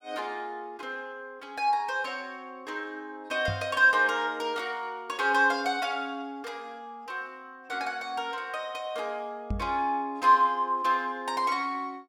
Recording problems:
microphone bump; at 3.5 s and at 9.5 s; peak 0 dB vs average level

